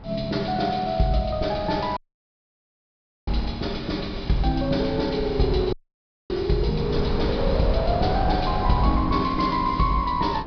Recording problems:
treble missing; nothing above 5.5 kHz
wind noise; below 210 Hz, SNR 7 dB
audio cutting out; at 2 s for 1.5 s and at 5.5 s for 0.5 s

